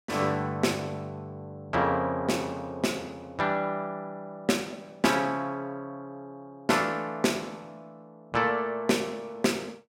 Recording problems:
none

